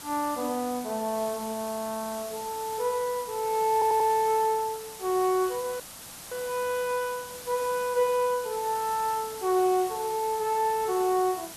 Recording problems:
background hiss; slope -1 dB per octave, SNR 12 dB
audio stuttering; at 3.5 s
dropout; at 6 s for 0.5 s

